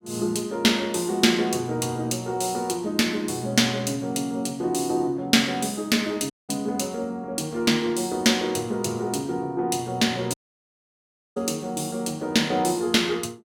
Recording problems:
audio cutting out; at 6.5 s and at 10 s for 1 s

